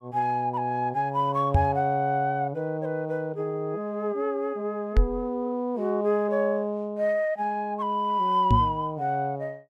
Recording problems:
microphone thump; at 1.5 s, at 5 s and at 8.5 s; peak +8 dB vs average level

